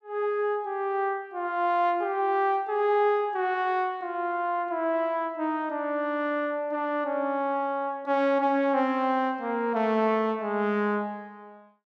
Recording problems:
none

